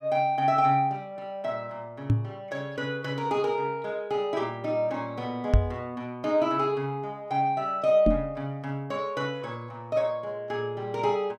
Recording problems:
knock on the microphone; at 2 s, at 5.5 s and at 8 s; peak +10 dB vs average level

